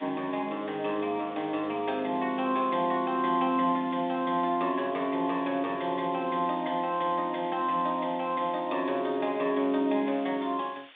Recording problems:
telephone audio; 190 Hz to 3.7 kHz, G.726
hiss; SNR 22 dB

